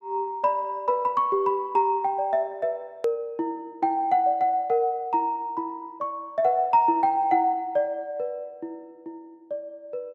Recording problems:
edit click; at 3 s

